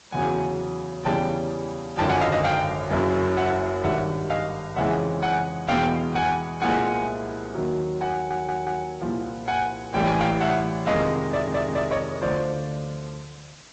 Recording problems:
treble cut off; nothing above 7.6 kHz
lossy compression; AAC, log-spectral distance 5 dB
distorted audio; hard clipping, uneven, signal-to-distortion ratio 11 dB
background hiss; slope -1 dB per octave, SNR 23 dB
audio stuttering; at 8 s and at 11 s

